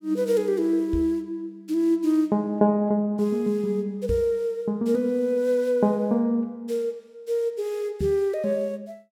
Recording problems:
microphone bump; at 1 s, at 4 s and at 8 s; peak -1 dB vs average level

